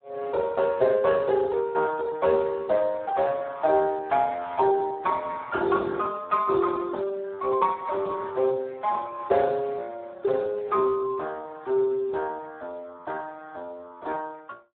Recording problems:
phone line; 280 Hz to 2.1 kHz, Speex

